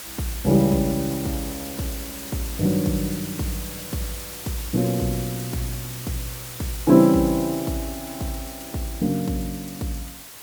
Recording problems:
background hiss; slope 0 dB per octave, SNR 10 dB

